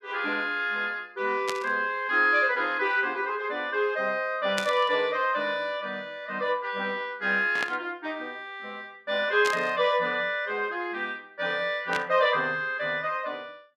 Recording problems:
static burst; 5 times, first at 1.5 s; peak -1 dB vs average level

